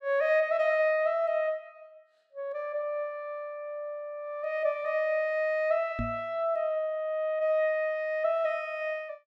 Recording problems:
knock on the microphone; at 6 s; peak -1 dB vs average level

